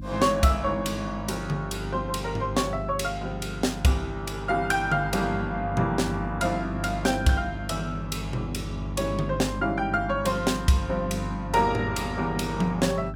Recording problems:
hum; 50 Hz, harmonics up to 300 Hz, SNR 9 dB

